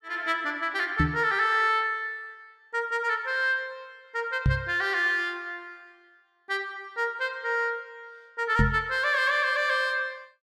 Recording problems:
microphone bump; at 1 s, at 4.5 s and at 8.5 s; peak +6 dB vs average level

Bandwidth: 14.5 kHz